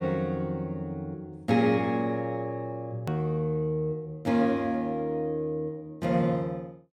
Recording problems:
hard cut with a click; at 3 s

